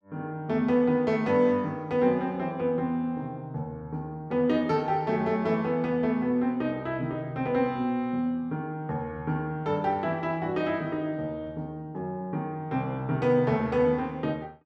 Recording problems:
none

